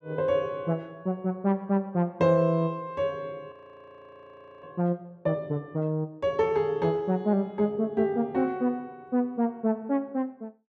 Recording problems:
frozen audio; at 3.5 s for 1 s

